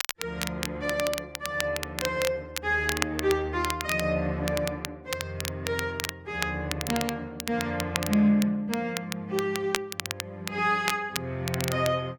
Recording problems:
crackle; vinyl, SNR 6 dB

